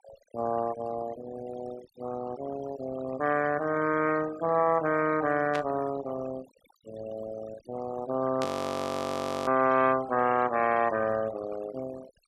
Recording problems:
denoising artefacts; signal-to-artefact ratio 15 dB
static burst; at 5.5 s and at 8.5 s; peak -4 dB vs average level
audio freezing; at 8.5 s for 1 s

